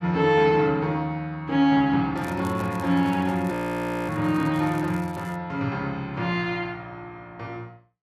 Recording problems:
crackle; from 2 to 5.5 s; loose cable, SNR 25 dB
audio freezing; at 3.5 s for 0.5 s

